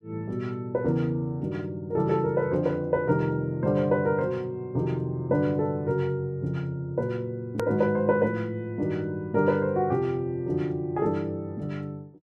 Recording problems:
edit click; at 7.5 s

